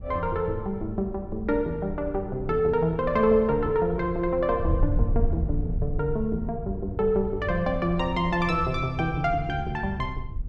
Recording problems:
wind noise; below 86 Hz, SNR 8 dB

